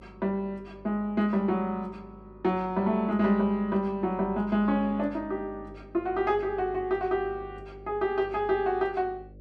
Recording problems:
hum; 50 Hz, harmonics up to 600 Hz, SNR 21 dB

